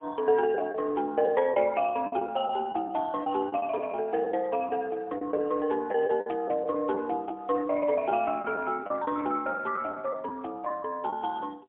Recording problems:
phone line; 340 Hz to 3.8 kHz, AMR-NB, then MP3
packet loss; 6% of the sound replaced, filled with the last packet

